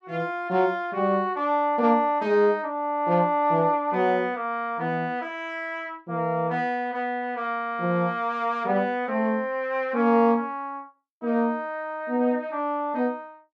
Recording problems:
none

